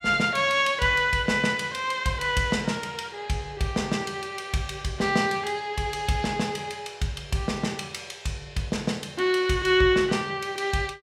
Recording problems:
none

